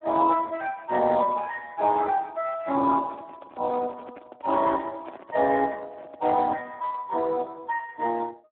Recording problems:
phone line; 220 Hz to 2.8 kHz, Speex
handling noise; from 2.5 to 6.5 s; peak -11 dB vs average level

